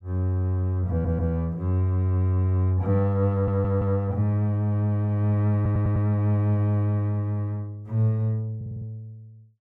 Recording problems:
stutter; 4 times, first at 1 s

